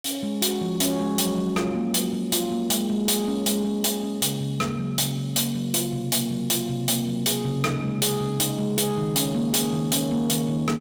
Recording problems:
distortion; soft clipping, signal-to-distortion ratio 10 dB

